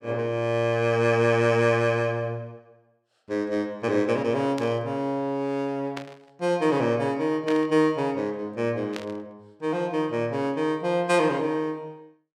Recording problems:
static burst; 4 times, first at 4.5 s; peak -6 dB vs average level

